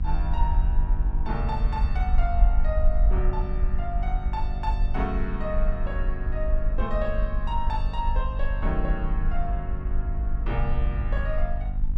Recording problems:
electrical hum; 50 Hz, harmonics up to 300 Hz, SNR 4 dB
low-frequency rumble; below 52 Hz, SNR -5 dB

